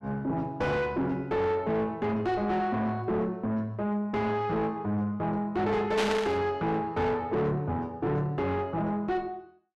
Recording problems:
distorted audio; soft clipping, signal-to-distortion ratio 7 dB
burst of static; at 6 s; peak +2 dB vs average level

